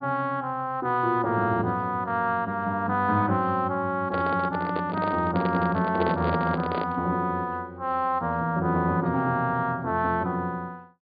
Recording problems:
treble missing; nothing above 4.8 kHz
handling noise; from 4 to 7 s; peak +1 dB vs average level

